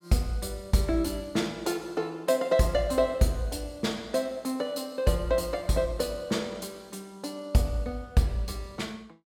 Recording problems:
none

